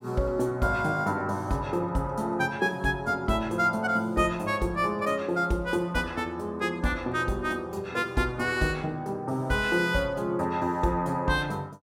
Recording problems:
none

